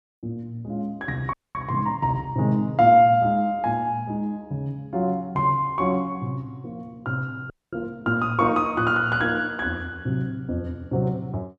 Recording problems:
frozen audio; at 1.5 s and at 7.5 s

